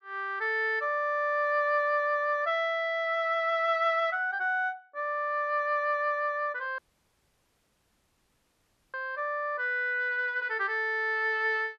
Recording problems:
audio cutting out; at 7 s for 2 s

